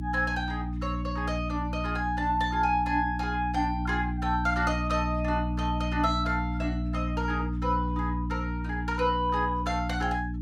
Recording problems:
hum; 60 Hz, harmonics up to 300 Hz, SNR 2 dB

